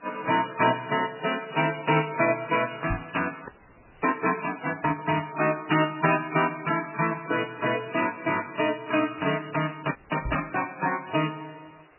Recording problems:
codec artefacts; MP3, log-spectral distance 13 dB, nothing above 2.8 kHz
hiss; SNR 29 dB
crackling; from 1.5 to 3 s and from 7 to 9 s; loose cable, SNR 27 dB
microphone bump; at 3 s and at 10 s; peak -2 dB vs average level
audio freezing; at 3.5 s for 0.5 s and at 10 s

